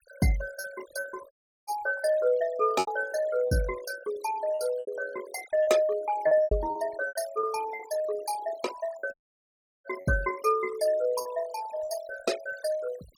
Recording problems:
denoising artefacts; signal-to-artefact ratio 16 dB
lost packets; 7% of the sound replaced, filled with repeated pitch periods
audio cutting out; at 1.5 s and at 9 s for 0.5 s

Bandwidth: 18 kHz